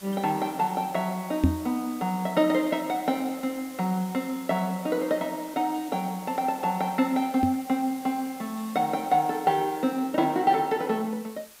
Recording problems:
hiss; slope 0 dB per octave, SNR 19 dB
microphone thump; at 1.5 s and at 7.5 s; peak +9 dB vs average level

